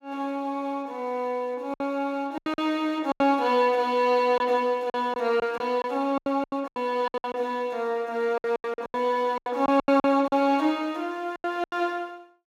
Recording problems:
packet loss; 12% of the sound replaced, filled with silence

